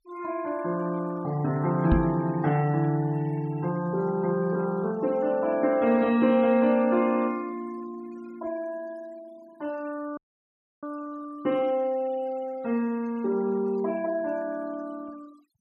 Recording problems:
denoising artefacts; signal-to-artefact ratio 24 dB
microphone thump; at 2 s; peak +7 dB vs average level
audio cutting out; at 10 s for 0.5 s

